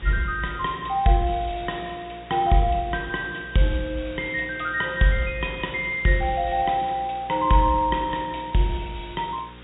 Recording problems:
treble missing; nothing above 4 kHz
mains hum; 60 Hz, harmonics up to 540 Hz, SNR 22 dB
background hiss; SNR 22 dB

